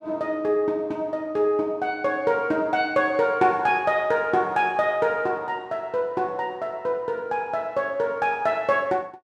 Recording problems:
none

